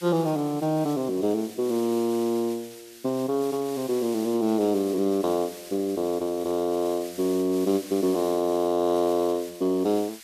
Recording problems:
background hiss; slope +3 dB per octave, SNR 18 dB

